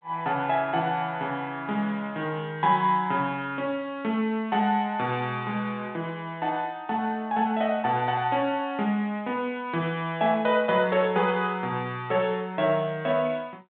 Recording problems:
phone line; 86 Hz to 3.7 kHz, G.726

